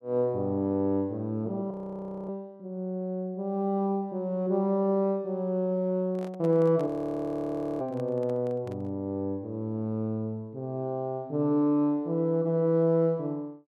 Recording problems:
audio freezing; at 1.5 s for 0.5 s and at 7 s for 1 s
handling noise; from 6 to 9 s; peak -11 dB vs average level

